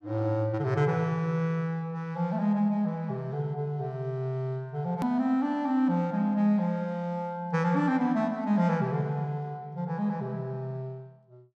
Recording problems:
click at an edit; at 5 s

